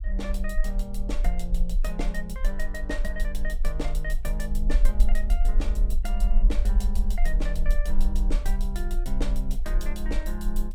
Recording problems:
low-frequency rumble; below 40 Hz, strongest tone 22 Hz, SNR -7 dB

